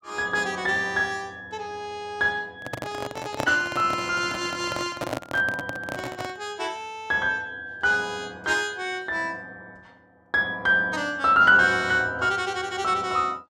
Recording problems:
microphone handling noise; from 2.5 to 6.5 s; peak 0 dB vs average level

